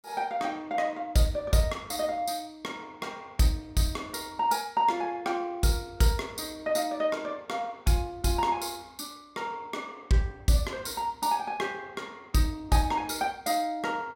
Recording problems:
none

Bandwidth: 16.5 kHz